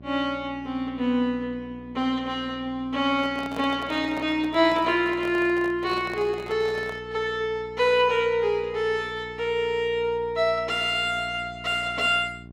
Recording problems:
hum; 60 Hz, harmonics up to 780 Hz, SNR 20 dB
handling noise; from 3 to 7 s; peak -8 dB vs average level

